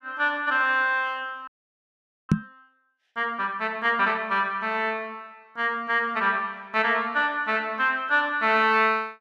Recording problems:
frozen audio; at 1.5 s for 1 s
knock on the microphone; at 2.5 s; peak +7 dB vs average level

